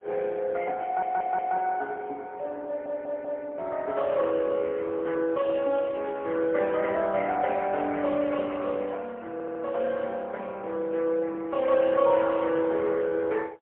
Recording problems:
telephone audio; 300 Hz to 3.4 kHz, AMR-NB, then MP3
audio stuttering; at 1 s, at 2.5 s and at 9.5 s

